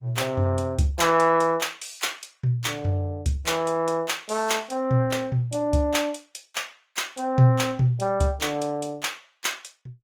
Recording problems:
lossy compression; Opus, log-spectral distance 3 dB, nothing above 19 kHz

